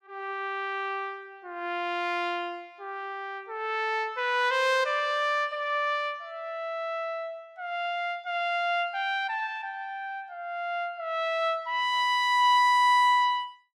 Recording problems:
none

